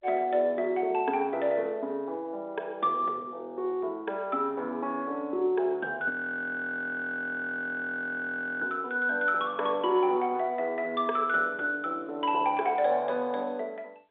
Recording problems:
phone line; 300 Hz to 3.6 kHz, G.711
audio freezing; at 6 s for 2.5 s

